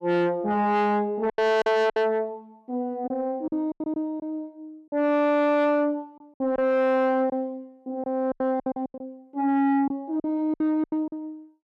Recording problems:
distorted audio; soft clipping, signal-to-distortion ratio 7 dB
packet loss; 10% of the sound replaced, filled with silence

